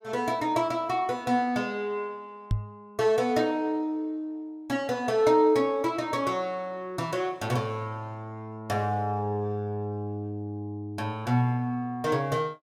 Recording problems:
knock on the microphone; at 2.5 s; peak +4 dB vs average level

